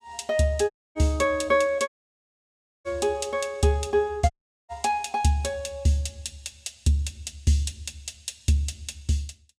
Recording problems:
dropout; at 0.5 s, at 2 s for 1 s and at 4.5 s

